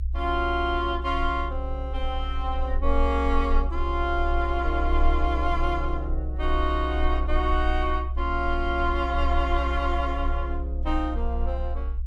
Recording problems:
low-frequency rumble; below 64 Hz, SNR 1 dB

